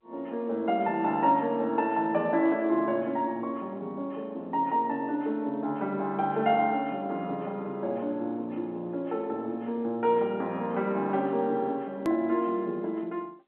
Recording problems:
phone line; 190 Hz to 3.6 kHz, G.711
edit click; at 12 s

